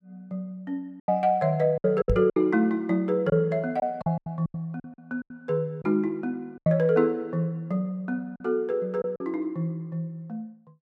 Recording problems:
packet loss; 8% of the sound replaced, filled with silence
microphone bump; at 2 s; peak +4 dB vs average level

